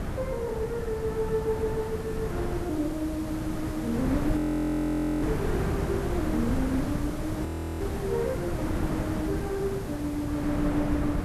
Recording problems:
background hiss; SNR 17 dB
wind on the microphone; below 400 Hz, SNR 1 dB
frozen audio; at 4.5 s for 1 s and at 7.5 s

